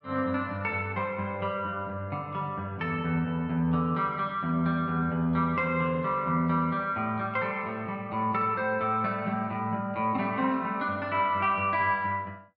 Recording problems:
none

